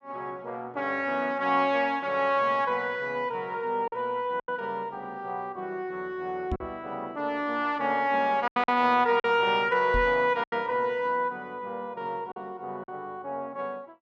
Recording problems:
packet loss; 3% of the sound replaced, filled with silence
microphone bump; at 6.5 s and at 10 s; peak 0 dB vs average level

